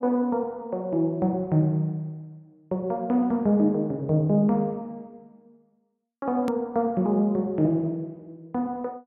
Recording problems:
hard cut with a click; at 6.5 s

